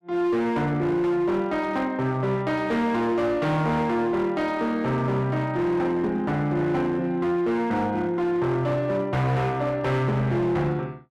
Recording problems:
distorted audio; hard clipping, signal-to-distortion ratio 11 dB

